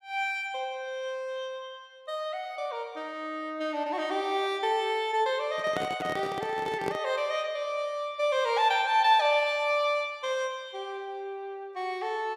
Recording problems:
microphone handling noise; from 5.5 to 7 s; peak -1 dB vs average level

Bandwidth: 14.5 kHz